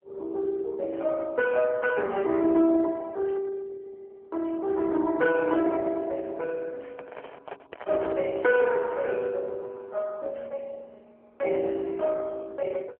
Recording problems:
phone line; 300 Hz to 2.5 kHz, AMR-NB
handling noise; from 7 to 8.5 s; peak -5 dB vs average level

